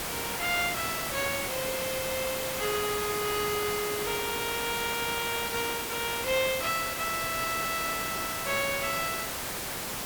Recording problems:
distorted audio; soft clipping, signal-to-distortion ratio 1 dB
background hiss; SNR 3 dB

